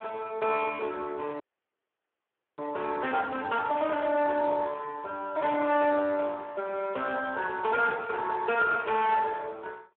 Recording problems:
phone line; 320 Hz to 3.3 kHz, Speex
distortion; hard clipping, signal-to-distortion ratio 11 dB
dropout; at 1.5 s for 1 s

